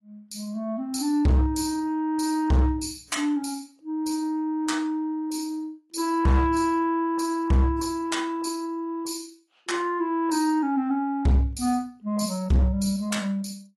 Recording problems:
codec artefacts; AAC, log-spectral distance 3 dB, nothing above 11.3 kHz
distortion; hard clipping, uneven, signal-to-distortion ratio 10 dB

